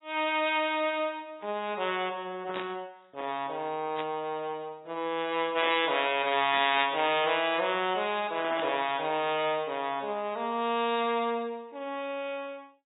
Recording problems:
codec artefacts; AAC, log-spectral distance 3 dB, nothing above 3.6 kHz
burst of static; 4 times, first at 2.5 s; peak -5 dB vs average level

